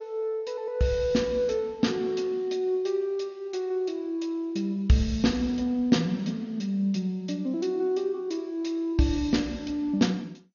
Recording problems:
codec artefacts; MP2, log-spectral distance 3 dB, nothing above 6.7 kHz

